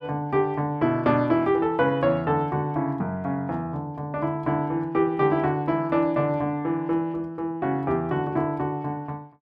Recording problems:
none

